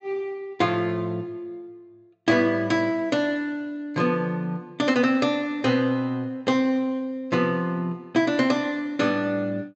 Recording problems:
low-pass filter; nothing above 8 kHz

